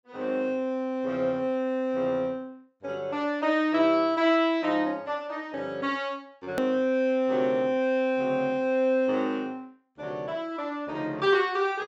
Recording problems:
treble cut off; nothing above 8 kHz
edit click; at 6.5 s

